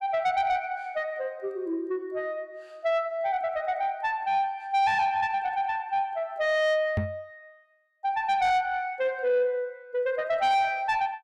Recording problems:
distortion; soft clipping, signal-to-distortion ratio 10 dB
microphone thump; at 7 s; peak +3 dB vs average level

